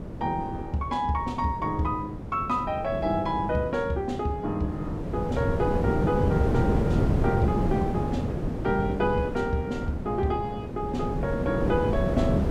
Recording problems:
wind on the microphone; below 350 Hz, SNR 1 dB

